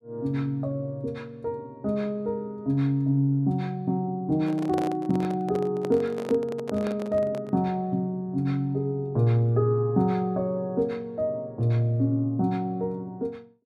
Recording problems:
microphone handling noise; from 4.5 to 7.5 s; peak -3 dB vs average level

